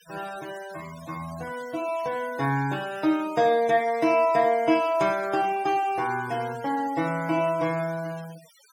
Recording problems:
denoising artefacts; signal-to-artefact ratio 21 dB

